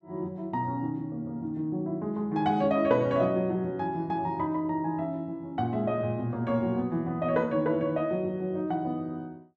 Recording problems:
none

